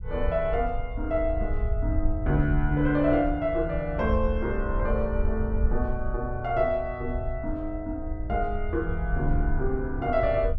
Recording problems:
low-frequency rumble; below 68 Hz, SNR 4 dB

